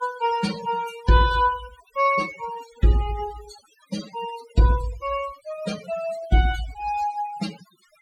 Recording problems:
denoising artefacts; signal-to-artefact ratio 13 dB

